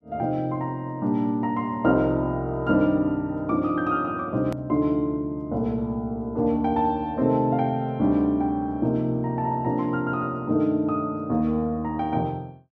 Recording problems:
edit click; at 4.5 s

